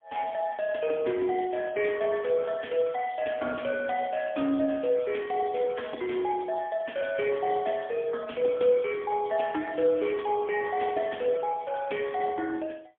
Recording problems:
phone line; 240 Hz to 3.4 kHz, AMR-NB, then MP3

